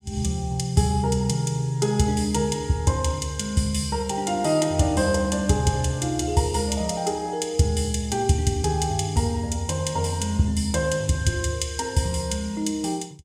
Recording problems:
none

